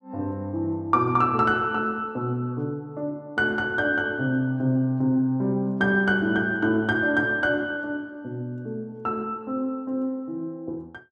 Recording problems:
none

